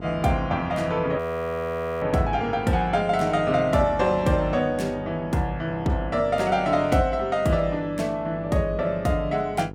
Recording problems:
hum; 50 Hz, harmonics up to 1 kHz, SNR 15 dB
frozen audio; at 1 s for 1 s

